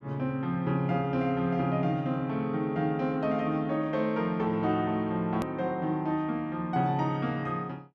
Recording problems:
hard cut with a click; at 5.5 s

